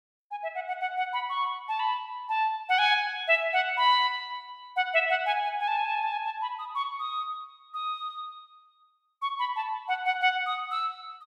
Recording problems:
none

